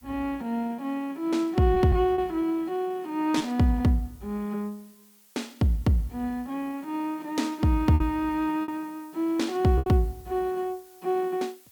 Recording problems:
hiss; SNR 28 dB
lost packets; 3% of the sound replaced, filled with repeated pitch periods

